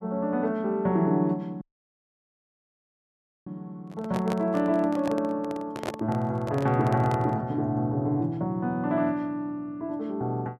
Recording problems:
audio cutting out; at 1.5 s for 2 s
handling noise; from 4 to 7.5 s; peak 0 dB vs average level

